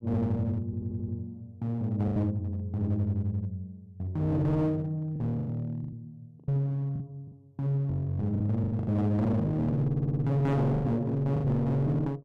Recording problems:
distorted audio; hard clipping, uneven, signal-to-distortion ratio 6 dB
lost packets; 7% of the sound replaced, filled with the last packet
audio stuttering; at 0.5 s and at 10 s

